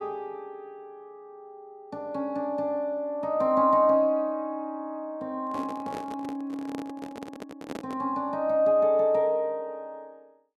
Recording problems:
handling noise; from 5.5 to 8 s; peak -6 dB vs average level

